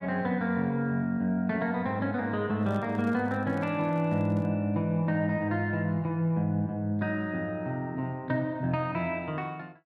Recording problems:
microphone handling noise; from 2.5 to 4.5 s; peak -12 dB vs average level

